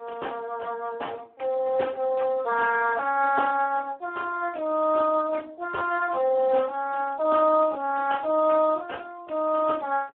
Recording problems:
phone line; 280 Hz to 2.3 kHz, Speex

